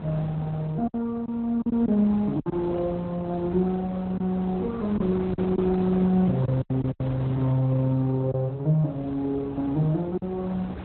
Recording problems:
codec artefacts; Opus, log-spectral distance 2 dB
wind on the microphone; below 560 Hz, SNR 13 dB
lost packets; 6% of the sound replaced, filled with silence

